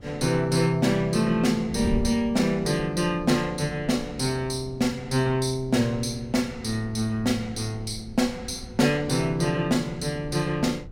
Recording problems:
wind noise; below 140 Hz, SNR 16 dB

